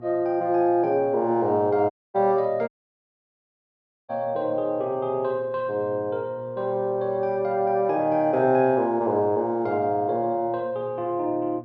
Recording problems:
hum; 60 Hz, harmonics up to 1.2 kHz, SNR 21 dB
dropout; at 2 s and at 2.5 s for 1.5 s

